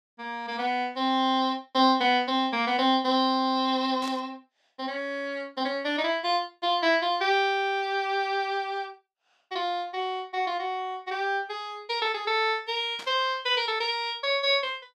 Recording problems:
burst of static; at 4 s and at 13 s; peak -10 dB vs average level

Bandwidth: 14.5 kHz